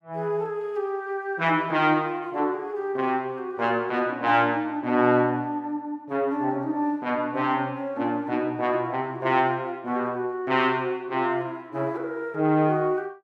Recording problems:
none

